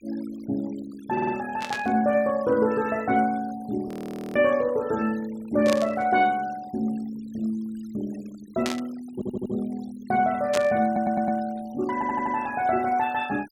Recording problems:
noise reduction artefacts; signal-to-artefact ratio 23 dB
audio stuttering; 4 times, first at 1 s
static burst; 4 times, first at 1.5 s; peak -1 dB vs average level
audio freezing; at 4 s

